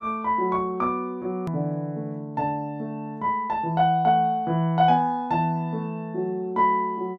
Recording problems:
edit click; at 1.5 s

